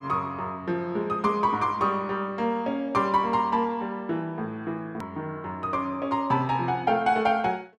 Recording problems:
click at an edit; at 5 s

